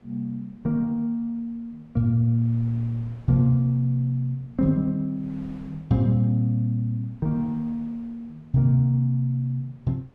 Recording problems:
wind noise; below 400 Hz, SNR 28 dB

